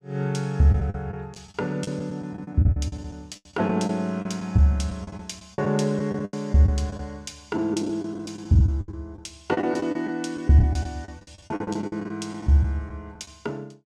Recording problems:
packet loss; 14% of the sound replaced, filled with the last packet

